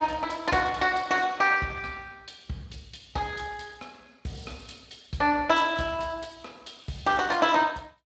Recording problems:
lossy compression; Speex, log-spectral distance 7 dB, nothing above 7.3 kHz

